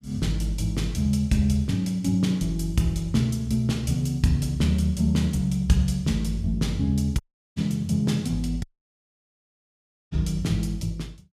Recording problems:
audio cutting out; at 7 s and at 8.5 s for 1.5 s

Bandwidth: 15 kHz